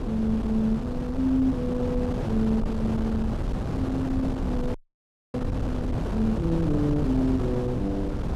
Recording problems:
wind noise; below 290 Hz, SNR 2 dB
audio freezing; at 5 s for 0.5 s

